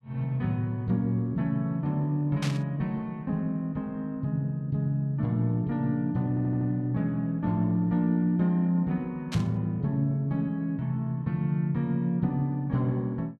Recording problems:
static burst; at 2.5 s and at 9.5 s; peak -4 dB vs average level
stutter; at 6.5 s

